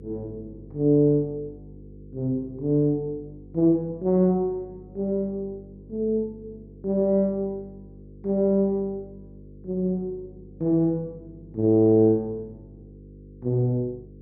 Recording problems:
hum; 50 Hz, harmonics up to 500 Hz, SNR 21 dB

